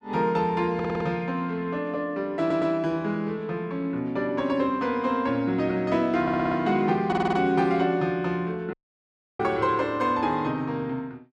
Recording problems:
stutter; 4 times, first at 1 s
dropout; at 8.5 s for 0.5 s

